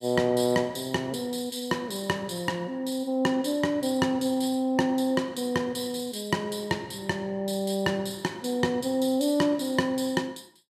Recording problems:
none

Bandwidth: 14.5 kHz